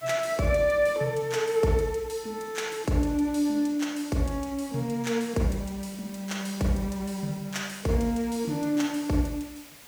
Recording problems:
hiss; slope -1 dB per octave, SNR 21 dB

